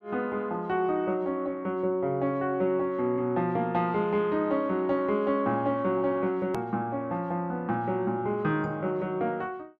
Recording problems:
hard cut with a click; at 6.5 s

